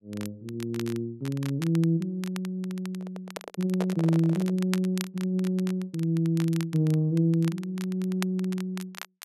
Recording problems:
crackling; vinyl, SNR 17 dB
microphone handling noise; from 3 to 4.5 s; peak -1 dB vs average level

